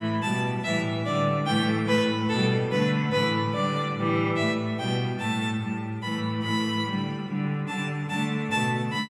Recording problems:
none

